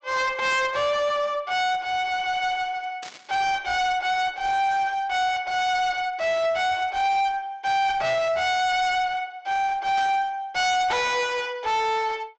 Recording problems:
treble missing; nothing above 8 kHz
distorted audio; hard clipping, uneven, signal-to-distortion ratio 6 dB
burst of static; at 3 s and at 10 s; peak -11 dB vs average level

